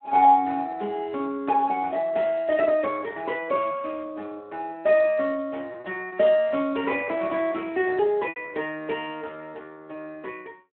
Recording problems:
telephone audio; 220 Hz to 3.3 kHz, Speex
packet loss; 2% of the sound replaced, filled with repeated pitch periods

